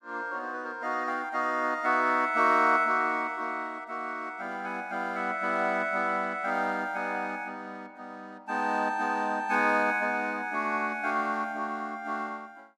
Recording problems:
none

